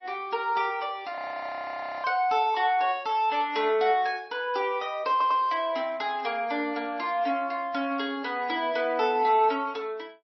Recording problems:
codec artefacts; MP3, log-spectral distance 2 dB, nothing above 5.5 kHz
frozen audio; at 1 s for 1 s
audio stuttering; at 5 s

